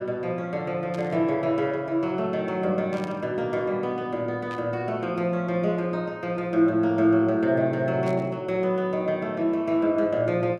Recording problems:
static burst; 4 times, first at 1 s; peak -13 dB vs average level

